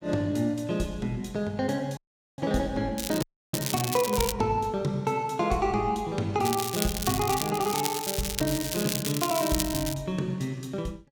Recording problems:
dropout; at 2 s and at 3 s
crackle; from 3 to 4.5 s and from 6.5 to 10 s; loose cable, SNR 3 dB

